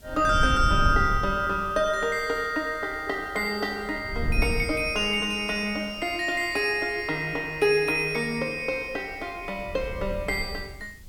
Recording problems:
hiss; slope +3 dB per octave, SNR 29 dB
wind on the microphone; below 98 Hz, SNR 7 dB

